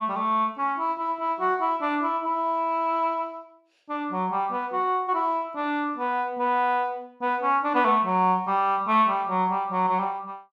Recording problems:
none

